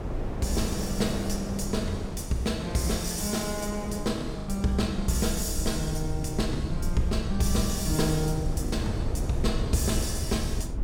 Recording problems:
low-frequency rumble; below 96 Hz, SNR 6 dB
wind noise; below 350 Hz, SNR 8 dB
packet loss; 1.5% of the sound replaced, filled with the last packet

